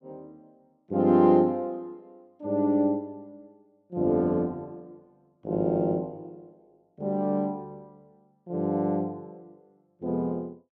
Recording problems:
none

